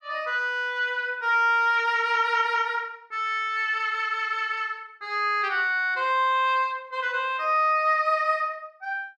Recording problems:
none

